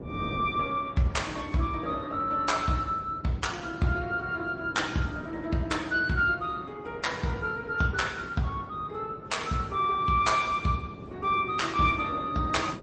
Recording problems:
lossy compression; MP3, then Opus, log-spectral distance 3 dB, nothing above 8.2 kHz
wind on the microphone; below 410 Hz, SNR 14 dB

